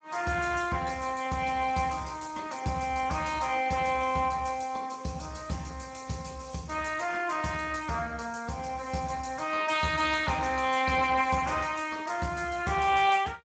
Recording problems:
codec artefacts; Speex, log-spectral distance 6 dB, nothing above 7.8 kHz

